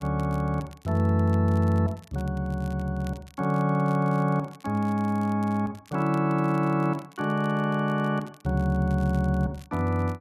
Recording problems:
crackle; vinyl, SNR 29 dB

